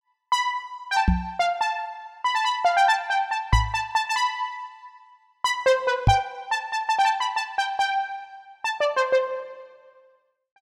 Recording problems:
knock on the microphone; at 1 s, at 3.5 s and at 6 s; peak +8 dB vs average level

